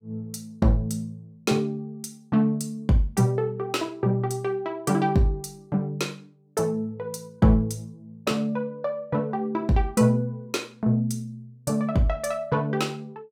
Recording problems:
none

